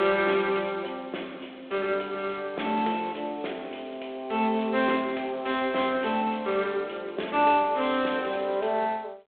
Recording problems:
telephone audio; 240 Hz to 3.7 kHz, G.726

